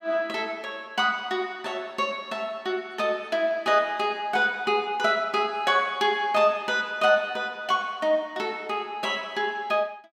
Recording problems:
none

